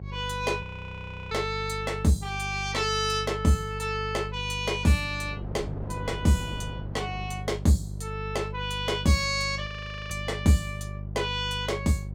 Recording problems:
hum; 50 Hz, harmonics up to 400 Hz, SNR 9 dB
wind noise; below 440 Hz, SNR 20 dB
audio freezing; at 0.5 s for 0.5 s and at 9.5 s

